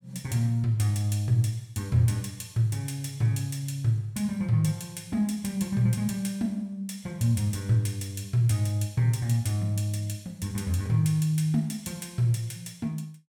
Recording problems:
none

